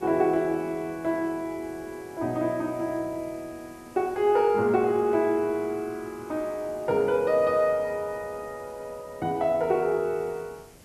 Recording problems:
hiss; SNR 24 dB

